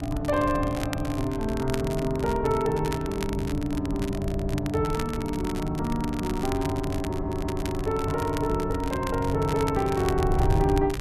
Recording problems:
wind noise; below 110 Hz, SNR 7 dB
crackle; vinyl, SNR 14 dB
audio stuttering; at 4 s and at 7 s

